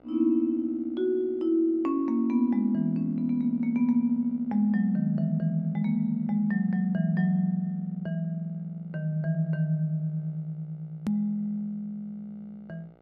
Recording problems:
hum; 60 Hz, harmonics up to 2.2 kHz, SNR 32 dB
edit click; at 11 s

